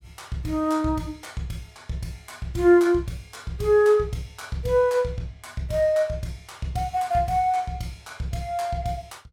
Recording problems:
none

